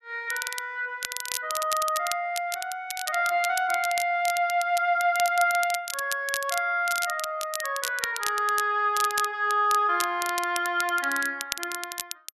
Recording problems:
crackling; vinyl, SNR 8 dB

